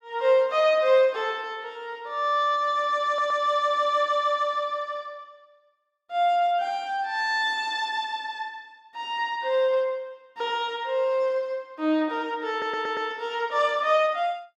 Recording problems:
stutter; at 3 s and at 13 s

